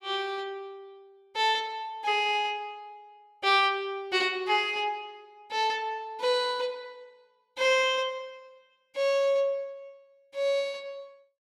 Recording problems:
none

